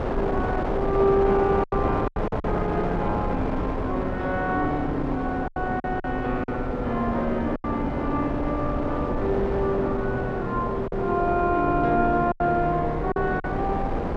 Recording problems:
wind on the microphone; below 630 Hz, SNR 3 dB
lost packets; 5% of the sound replaced, filled with silence

